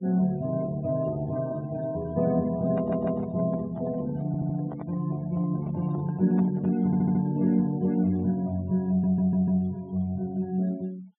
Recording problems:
low-pass filter; nothing above 4 kHz
noise reduction artefacts; signal-to-artefact ratio 24 dB
handling noise; from 2.5 to 7.5 s; peak -8 dB vs average level
audio stuttering; 4 times, first at 3 s

